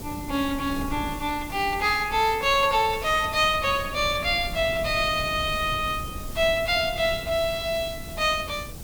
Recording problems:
hiss; slope +3 dB per octave, SNR 18 dB
wind noise; below 200 Hz, SNR 14 dB

